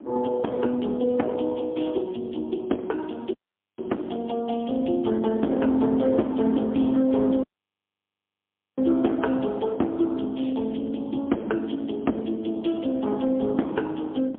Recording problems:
telephone audio; 170 Hz to 3.5 kHz, AMR-NB, then MP3
distortion; hard clipping, uneven, signal-to-distortion ratio 10 dB
wind on the microphone; below 390 Hz, SNR 18 dB
audio cutting out; at 3.5 s and at 7.5 s for 1.5 s

